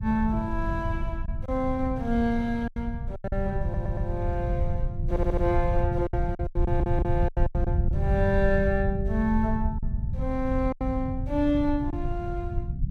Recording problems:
rumble; below 100 Hz, SNR 1 dB
lost packets; 7% of the sound replaced, filled with silence
stutter; at 3.5 s, at 5 s and at 6.5 s

